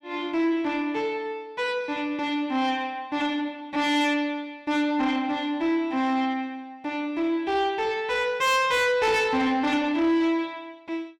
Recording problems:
distorted audio; soft clipping, signal-to-distortion ratio 11 dB

